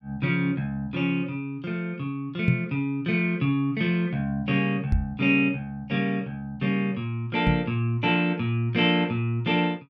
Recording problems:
knock on the microphone; at 2.5 s, at 5 s and at 7.5 s; peak +6 dB vs average level

